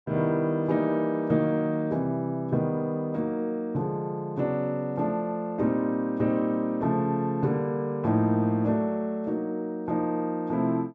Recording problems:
none

